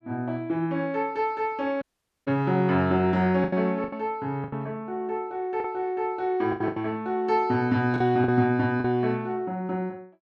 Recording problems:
packet loss; 6% of the sound replaced, filled with the last packet
audio cutting out; at 2 s

